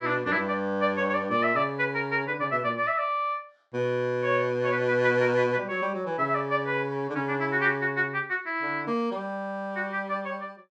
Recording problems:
none

